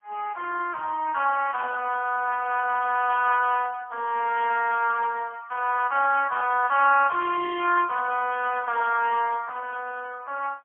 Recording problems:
telephone audio; 300 Hz to 2.8 kHz, AMR-NB, then MP3

